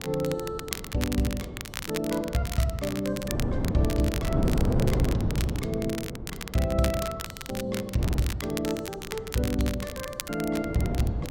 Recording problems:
wind on the microphone; below 300 Hz, SNR 1 dB
crackling; vinyl, SNR 8 dB

